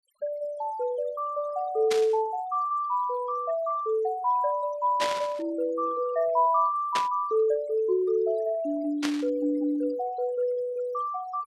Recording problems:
noise reduction artefacts; signal-to-artefact ratio 22 dB
burst of static; 4 times, first at 2 s; peak +1 dB vs average level

